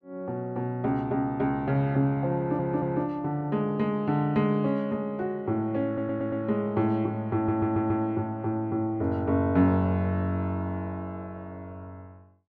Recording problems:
stutter; at 2.5 s, at 6 s and at 7.5 s

